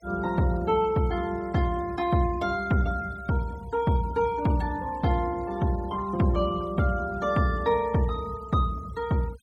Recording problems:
denoising artefacts; signal-to-artefact ratio 23 dB

